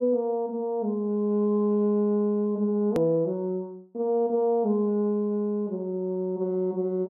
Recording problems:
click at an edit; at 3 s

